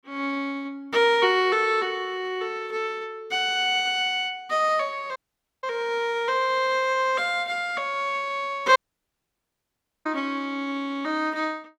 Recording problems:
dropout; at 5 s and at 9 s for 1.5 s

